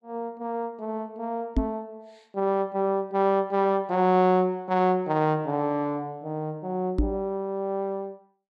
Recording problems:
knock on the microphone; at 1.5 s and at 7 s; peak +5 dB vs average level

